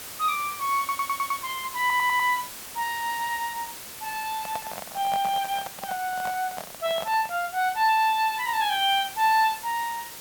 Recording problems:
hiss; slope -1 dB per octave, SNR 12 dB
stutter; at 1 s and at 2 s
handling noise; from 4.5 to 7.5 s; peak -5 dB vs average level

